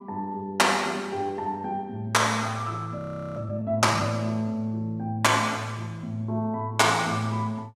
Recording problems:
audio freezing; at 3 s

